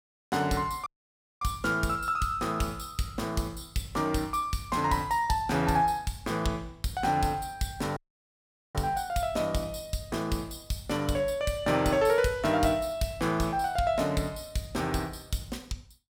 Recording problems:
dropout; at 1 s for 0.5 s and at 8 s for 1 s

